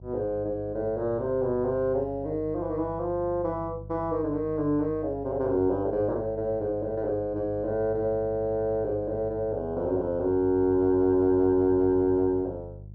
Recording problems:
treble missing; nothing above 6.5 kHz
mains hum; 50 Hz, harmonics up to 350 Hz, SNR 16 dB

